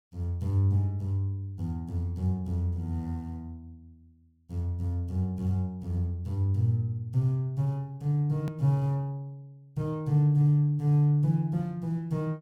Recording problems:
click at an edit; at 8.5 s

